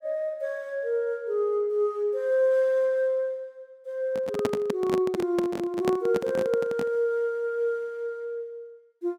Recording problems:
microphone handling noise; from 4 to 7 s; peak +3 dB vs average level

